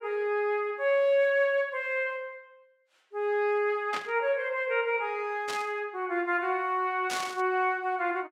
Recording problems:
burst of static; at 4 s, at 5.5 s and at 7 s; peak -2 dB vs average level

